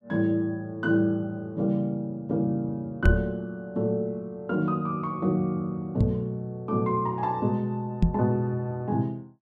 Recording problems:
knock on the microphone; at 3 s, at 6 s and at 8 s; peak +9 dB vs average level

